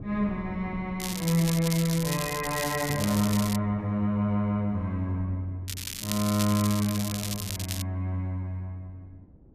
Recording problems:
wind on the microphone; below 230 Hz, SNR 19 dB
crackling; from 1 to 3.5 s and from 5.5 to 8 s; loose cable, SNR 6 dB

